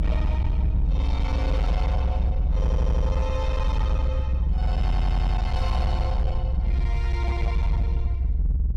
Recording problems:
distortion; hard clipping, signal-to-distortion ratio 11 dB
low-frequency rumble; below 66 Hz, SNR -9 dB
wind noise; below 270 Hz, SNR 15 dB
audio stuttering; at 2.5 s and at 5 s

